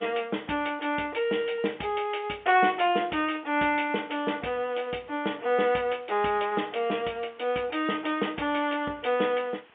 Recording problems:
phone line; 220 Hz to 3.4 kHz, G.711
background hiss; SNR 28 dB

